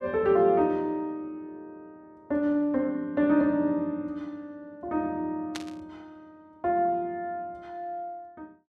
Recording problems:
static burst; at 5.5 s; peak -4 dB vs average level

